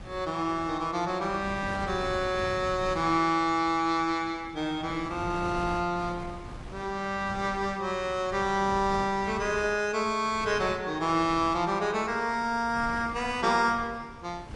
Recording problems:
lossy compression; MP3, log-spectral distance 2 dB
wind on the microphone; below 610 Hz, SNR 15 dB

